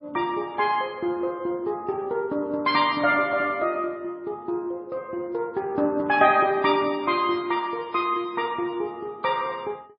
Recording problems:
codec artefacts; MP3, log-spectral distance 2 dB, nothing above 4.2 kHz

